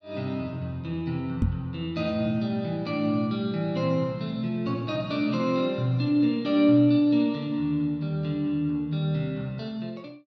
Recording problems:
knock on the microphone; at 1.5 s; peak +4 dB vs average level

